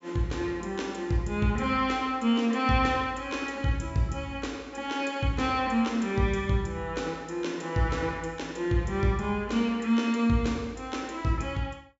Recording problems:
treble missing; nothing above 8 kHz

